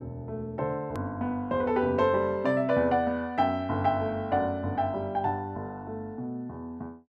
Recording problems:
edit click; at 1 s

